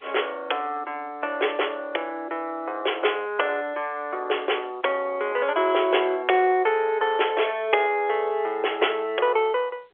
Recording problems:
telephone audio; 320 Hz to 3.4 kHz, G.711

